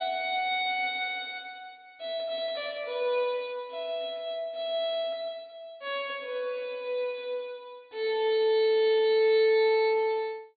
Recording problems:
low-pass filter; nothing above 4.6 kHz

